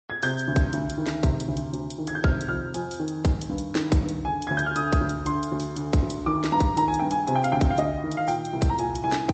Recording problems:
low-pass filter; nothing above 8 kHz
codec artefacts; MP3, log-spectral distance 3 dB

